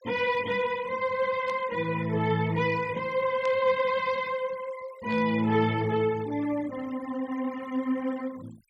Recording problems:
noise reduction artefacts; signal-to-artefact ratio 21 dB
burst of static; at 1.5 s, at 3.5 s and at 5 s; peak -11 dB vs average level

